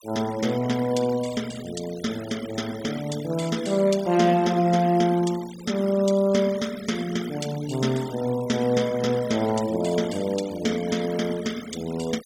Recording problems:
noise reduction artefacts; signal-to-artefact ratio 17 dB

